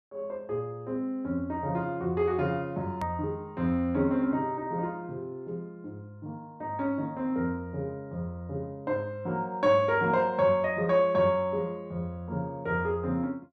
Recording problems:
hard cut with a click; at 3 s

